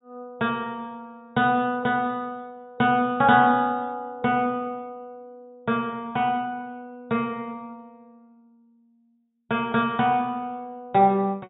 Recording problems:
treble missing; nothing above 4 kHz

